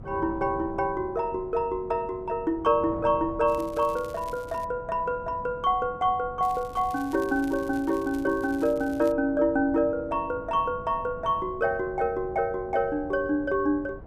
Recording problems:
wind noise; below 350 Hz, SNR 17 dB
crackle; from 3.5 to 4.5 s and from 6.5 to 9 s; loose cable, SNR 24 dB

